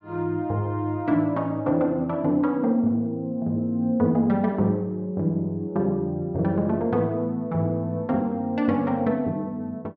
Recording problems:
none

